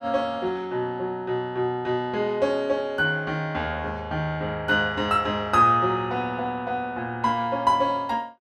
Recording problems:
none

